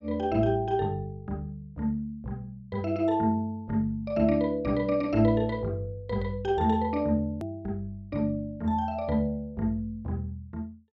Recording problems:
edit click; at 7.5 s

